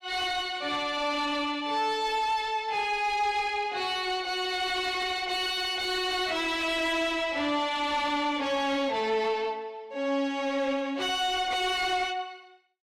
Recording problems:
distortion; soft clipping, signal-to-distortion ratio 10 dB

